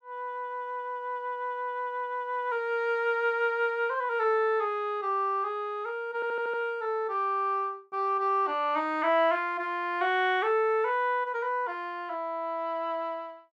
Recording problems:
audio stuttering; at 6 s

